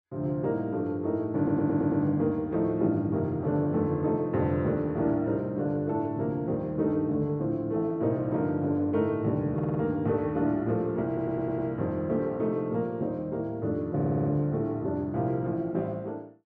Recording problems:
stutter; 4 times, first at 1.5 s

